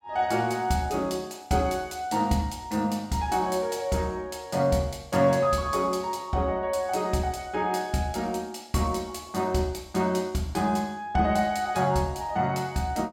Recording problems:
none

